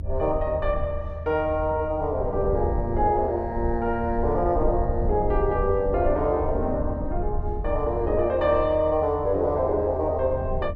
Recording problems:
low-frequency rumble; below 82 Hz, SNR 7 dB

